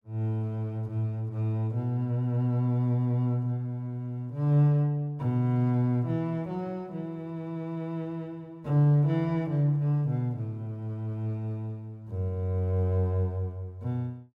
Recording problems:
none

